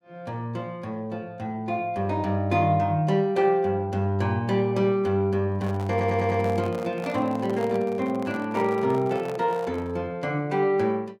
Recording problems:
microphone handling noise; from 5.5 to 10 s; peak -9 dB vs average level
audio stuttering; at 6 s

